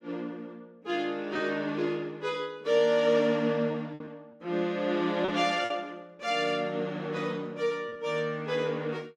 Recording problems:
lost packets; 3% of the sound replaced, filled with repeated pitch periods

